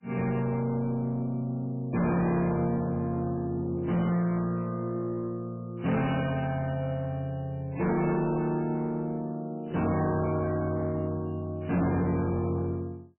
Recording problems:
lossy codec; MP3, log-spectral distance 2 dB, nothing above 2.4 kHz
distortion; soft clipping, signal-to-distortion ratio 7 dB

